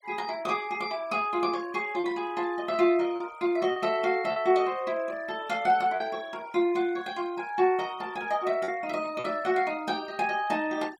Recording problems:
noise reduction artefacts; signal-to-artefact ratio 24 dB
lost packets; 3% of the sound replaced, filled with repeated pitch periods

